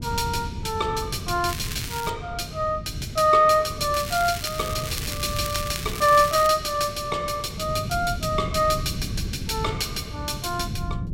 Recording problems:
wind noise; below 170 Hz, SNR 10 dB
crackle; at 1.5 s and from 4 to 6.5 s; loose cable, SNR 9 dB

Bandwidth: 16 kHz